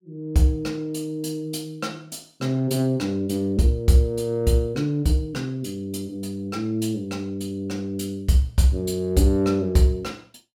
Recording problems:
none

